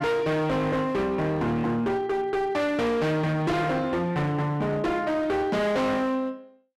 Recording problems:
distortion; hard clipping, signal-to-distortion ratio 6 dB

